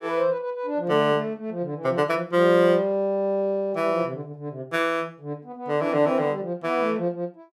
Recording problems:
none

